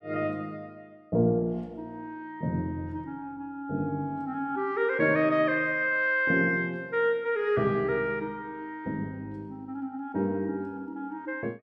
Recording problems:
none

